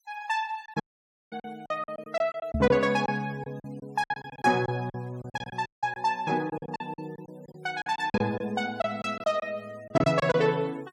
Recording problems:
denoising artefacts; signal-to-artefact ratio 27 dB
packet loss; 13% of the sound replaced, filled with silence
dropout; at 1 s for 0.5 s and at 5.5 s
microphone thump; at 2.5 s; peak +3 dB vs average level

